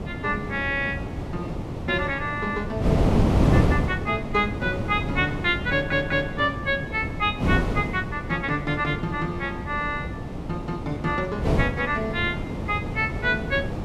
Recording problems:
wind noise; below 370 Hz, SNR 2 dB
audio stuttering; at 5.5 s

